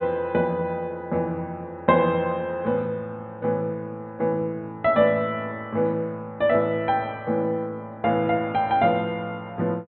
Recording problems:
low-pass filter; nothing above 4 kHz

